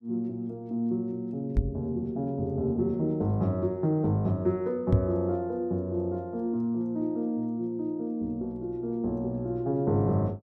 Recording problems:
knock on the microphone; at 1.5 s and at 5 s; peak +9 dB vs average level

